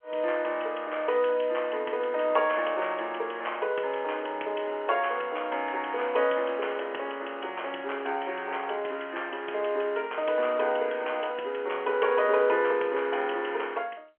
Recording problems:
telephone audio; 320 Hz to 3.2 kHz, G.711

